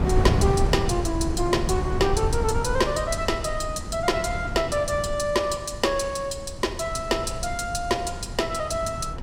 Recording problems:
wind on the microphone; below 170 Hz, SNR 5 dB

